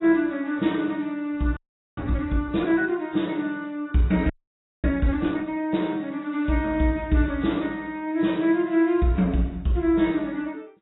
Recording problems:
codec artefacts; AAC, log-spectral distance 2 dB, nothing above 3.9 kHz
frozen audio; at 1.5 s and at 4.5 s for 0.5 s

